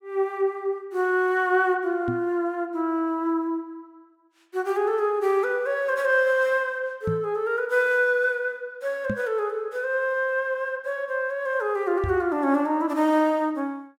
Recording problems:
microphone thump; 4 times, first at 2 s; peak 0 dB vs average level

